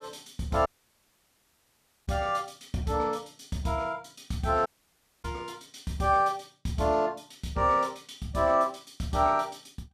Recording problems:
dropout; at 0.5 s for 1.5 s and at 4.5 s for 0.5 s

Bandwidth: 14.5 kHz